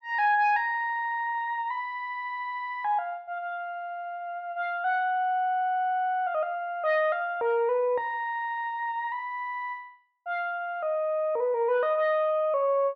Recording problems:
none

